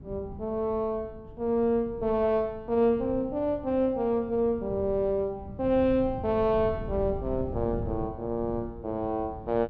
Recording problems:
wind on the microphone; below 170 Hz, SNR 13 dB

